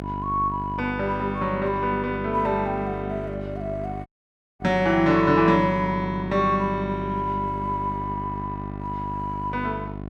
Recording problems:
mains hum; 50 Hz, harmonics up to 1.4 kHz, SNR 9 dB
dropout; at 4 s for 0.5 s

